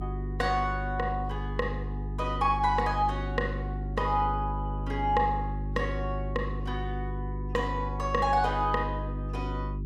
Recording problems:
hum; 50 Hz, harmonics up to 400 Hz, SNR 4 dB

